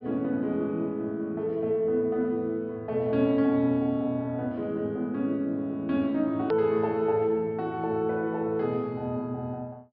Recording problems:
treble cut off; nothing above 5.5 kHz
hard cut with a click; at 6.5 s

